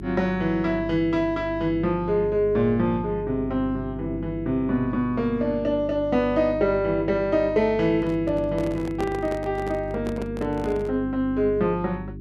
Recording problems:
hum; 50 Hz, harmonics up to 400 Hz, SNR 12 dB
handling noise; from 8 to 11 s; peak -4 dB vs average level

